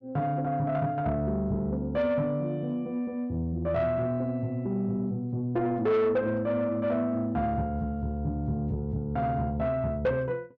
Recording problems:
distortion; soft clipping, signal-to-distortion ratio 12 dB

